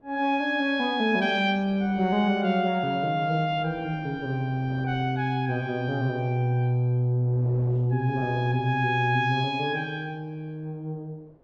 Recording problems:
wind on the microphone; below 620 Hz, SNR 23 dB

